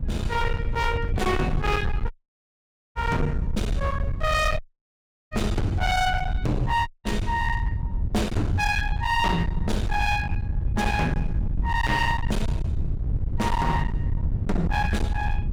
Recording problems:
distortion; hard clipping, signal-to-distortion ratio 8 dB
wind noise; below 120 Hz, SNR 2 dB
dropout; at 2 s for 1 s, at 4.5 s for 0.5 s and at 7 s

